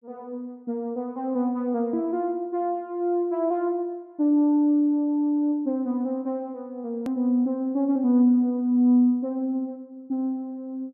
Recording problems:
click at an edit; at 7 s

